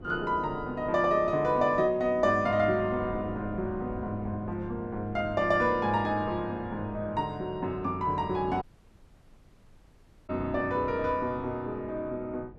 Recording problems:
wind on the microphone; below 310 Hz, SNR 17 dB
dropout; at 8.5 s for 1.5 s

